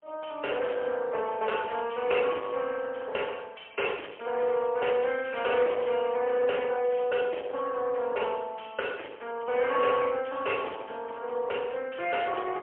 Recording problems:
phone line; 320 Hz to 3.3 kHz, AMR-NB, then MP3
distortion; soft clipping, signal-to-distortion ratio 10 dB

